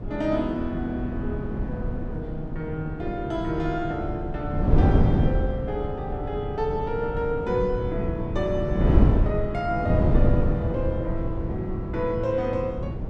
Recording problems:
wind noise; below 200 Hz, SNR -2 dB

